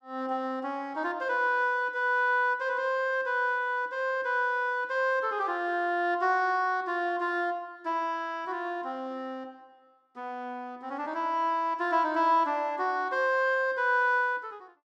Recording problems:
none

